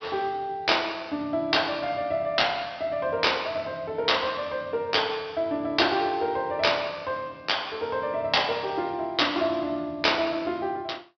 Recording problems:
low-pass filter; nothing above 5.5 kHz

